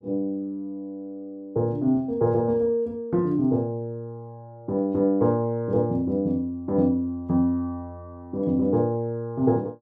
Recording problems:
none

